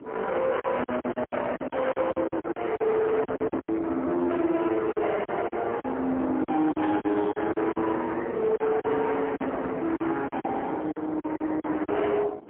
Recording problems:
phone line; 280 Hz to 3.3 kHz, AMR-NB, then MP3
distorted audio; soft clipping, signal-to-distortion ratio 9 dB
wind noise; below 920 Hz, SNR 15 dB
packet loss; 13% of the sound replaced, filled with silence

